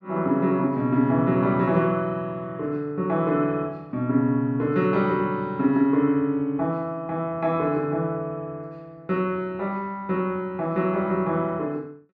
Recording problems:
none

